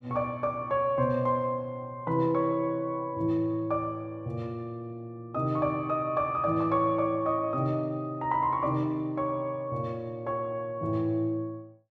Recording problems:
none

